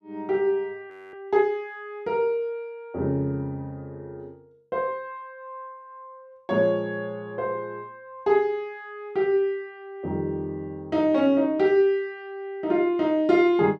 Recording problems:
frozen audio; at 1 s

